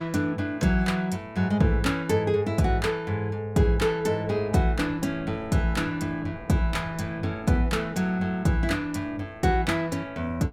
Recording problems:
wind on the microphone; below 440 Hz, SNR 23 dB

